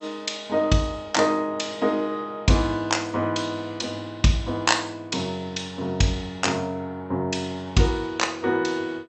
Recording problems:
lossy codec; MP2, log-spectral distance 3 dB, nothing above 7.8 kHz

